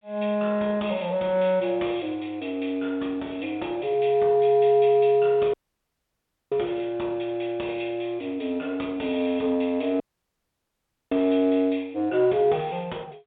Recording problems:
phone line; 220 Hz to 3.7 kHz, G.711
dropout; at 5.5 s for 1 s and at 10 s for 1 s

